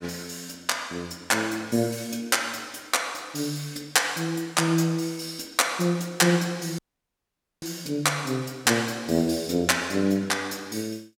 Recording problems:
audio cutting out; at 7 s for 1 s

